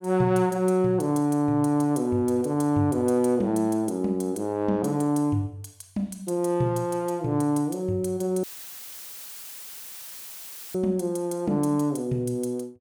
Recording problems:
dropout; at 8.5 s for 2.5 s; filled with static

